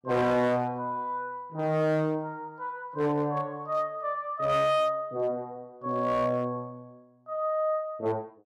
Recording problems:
distortion; hard clipping, signal-to-distortion ratio 12 dB

